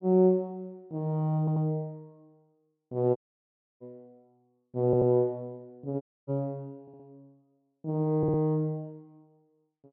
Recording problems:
stutter; 4 times, first at 1.5 s
dropout; at 3 s for 0.5 s and at 6 s

